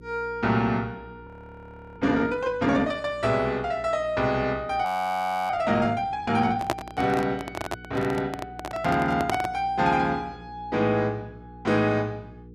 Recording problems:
electrical hum; 60 Hz, harmonics up to 480 Hz, SNR 21 dB
audio freezing; at 1.5 s for 0.5 s and at 5 s for 0.5 s
microphone handling noise; from 6.5 to 9.5 s; peak +4 dB vs average level

